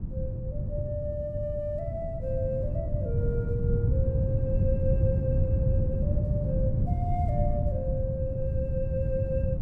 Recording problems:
wind noise; below 130 Hz, SNR -5 dB

